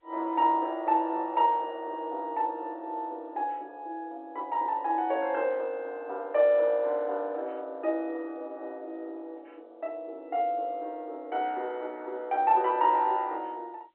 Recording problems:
telephone audio; 300 Hz to 3.2 kHz, G.711

